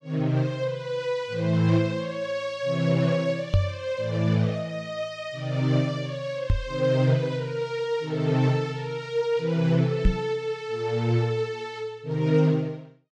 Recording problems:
microphone bump; at 3.5 s, at 6.5 s and at 10 s; peak +7 dB vs average level

